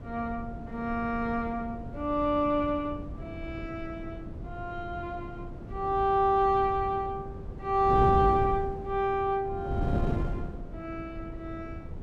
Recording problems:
wind noise; below 230 Hz, SNR 9 dB

